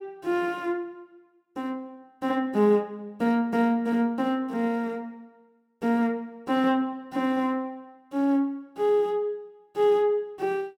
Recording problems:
none

